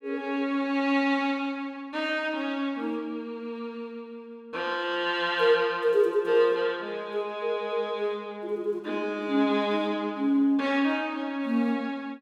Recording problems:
none

